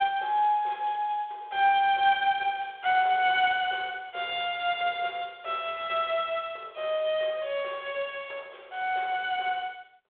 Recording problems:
phone line; 340 Hz to 3.6 kHz, G.726

